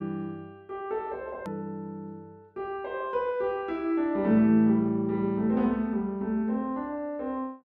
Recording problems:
hard cut with a click; at 1.5 s

